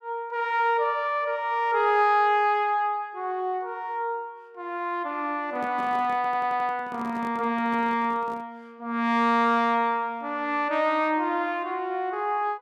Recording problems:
handling noise; from 5.5 to 8.5 s; peak -11 dB vs average level
stutter; at 6 s

